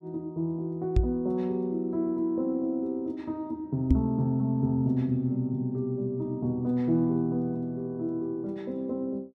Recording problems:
microphone bump; at 1 s and at 4 s; peak +9 dB vs average level

